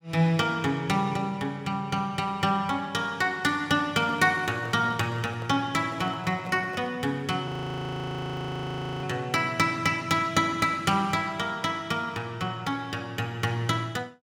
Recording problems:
handling noise; from 4 to 7 s; peak -10 dB vs average level
audio freezing; at 7.5 s for 1.5 s

